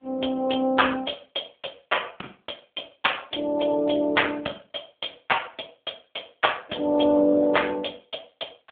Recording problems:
telephone audio; 260 Hz to 3.6 kHz, AMR-NB

